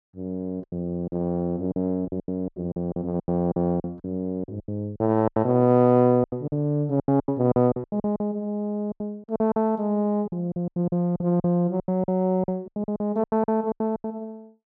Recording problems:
lost packets; 17% of the sound replaced, filled with silence

